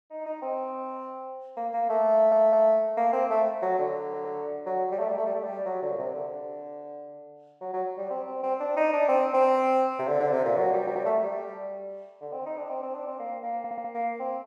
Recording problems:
audio stuttering; 4 times, first at 2 s

